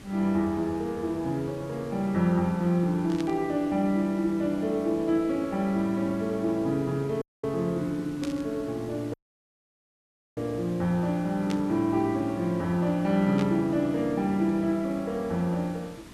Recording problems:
hiss; slope -4 dB per octave, SNR 19 dB
burst of static; 4 times, first at 3 s; peak -7 dB vs average level
audio cutting out; at 7 s and at 9 s for 1 s

